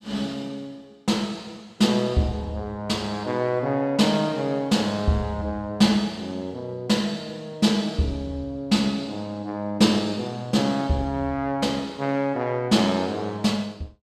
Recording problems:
none

